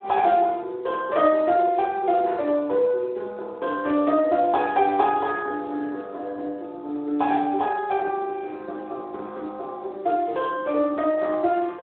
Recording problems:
telephone audio; 320 Hz to 3.3 kHz, Speex

